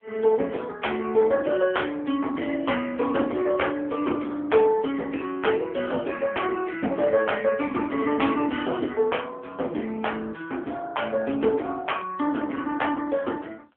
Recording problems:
phone line; 220 Hz to 3.4 kHz, AMR-NB
distorted audio; soft clipping, signal-to-distortion ratio 13 dB

